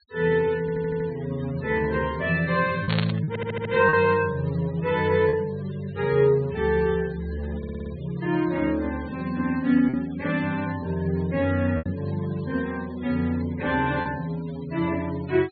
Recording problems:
treble missing; nothing above 4.4 kHz
denoising artefacts; signal-to-artefact ratio 22 dB
packet loss; 2% of the sound replaced, filled with repeated pitch periods
audio stuttering; at 0.5 s, at 3.5 s and at 7.5 s
static burst; at 3 s; peak +1 dB vs average level

